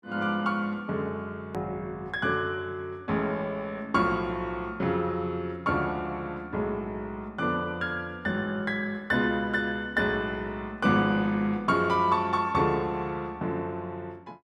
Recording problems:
hard cut with a click; at 1.5 s

